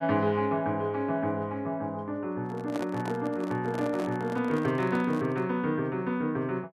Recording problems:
handling noise; from 2.5 to 5.5 s; peak -3 dB vs average level

